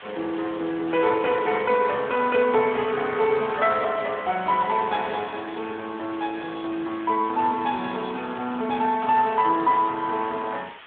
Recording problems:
phone line; 220 Hz to 3.4 kHz, Speex
background hiss; SNR 19 dB

